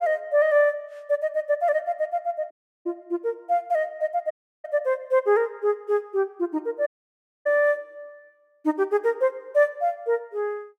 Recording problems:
dropout; at 2.5 s, at 4.5 s and at 7 s for 0.5 s

